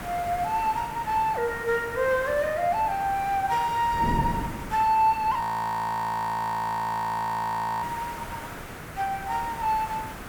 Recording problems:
hiss; SNR 13 dB
wind on the microphone; below 290 Hz, SNR 14 dB
audio freezing; at 5.5 s for 2.5 s

